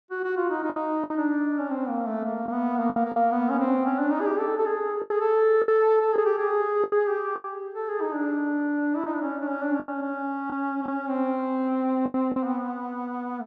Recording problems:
packet loss; 6% of the sound replaced, filled with the last packet

